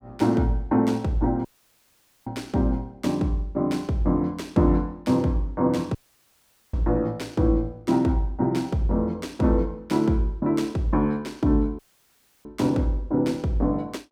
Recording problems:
dropout; at 1.5 s for 1 s, at 6 s for 1 s and at 12 s for 0.5 s

